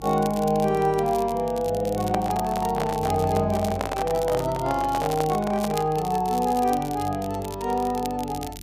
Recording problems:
hum; 50 Hz, harmonics up to 350 Hz, SNR 17 dB
crackling; vinyl, SNR 17 dB
microphone handling noise; from 2 to 6 s; peak 0 dB vs average level

